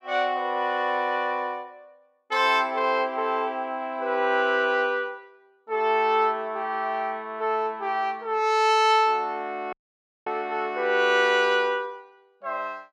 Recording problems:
audio cutting out; at 9.5 s for 0.5 s

